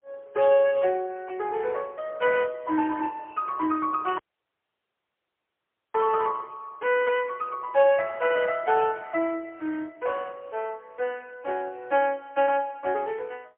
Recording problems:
phone line; 280 Hz to 3.3 kHz, AMR-NB, then MP3
dropout; at 4 s for 2 s

